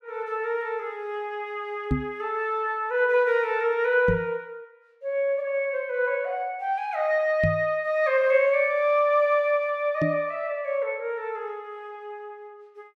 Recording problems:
knock on the microphone; 4 times, first at 2 s; peak +4 dB vs average level

